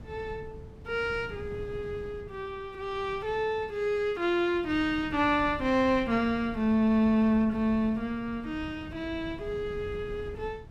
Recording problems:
wind noise; below 190 Hz, SNR 16 dB

